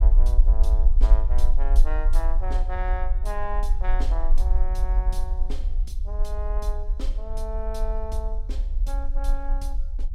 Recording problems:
rumble; below 46 Hz, strongest tone 20 Hz, SNR -11 dB

